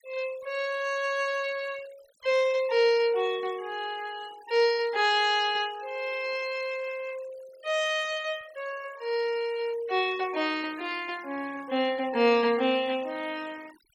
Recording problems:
denoising artefacts; signal-to-artefact ratio 20 dB

